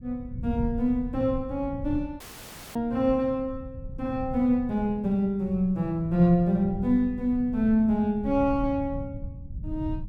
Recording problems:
rumble; below 120 Hz, SNR 13 dB
dropout; at 2 s for 0.5 s

